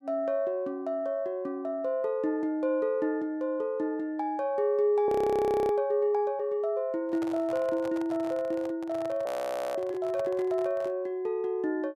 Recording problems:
audio freezing; at 5 s for 0.5 s and at 9.5 s
microphone handling noise; from 7 to 11 s; peak -7 dB vs average level

